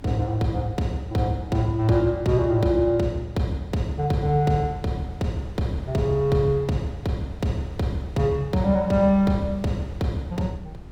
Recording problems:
hum; 50 Hz, harmonics up to 400 Hz, SNR 21 dB
wind noise; below 160 Hz, SNR 20 dB

